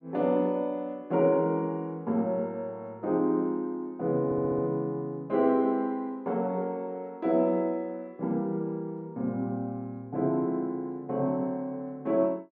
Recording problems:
audio stuttering; at 4.5 s

